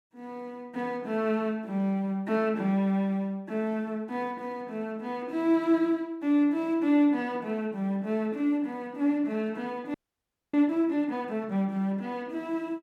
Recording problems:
frozen audio; at 10 s for 0.5 s

